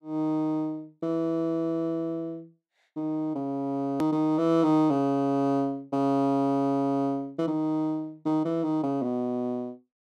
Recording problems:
hard cut with a click; at 4 s

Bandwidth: 13.5 kHz